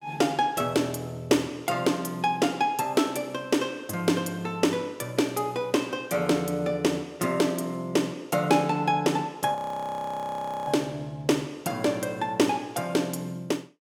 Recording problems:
audio freezing; at 9.5 s for 1 s

